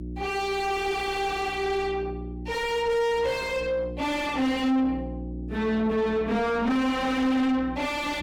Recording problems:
distorted audio; soft clipping, signal-to-distortion ratio 4 dB
hum; 60 Hz, harmonics up to 360 Hz, SNR 13 dB

